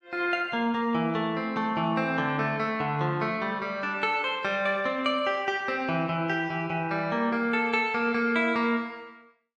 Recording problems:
none

